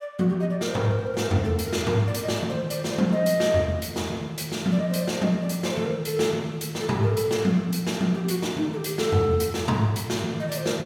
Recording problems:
none

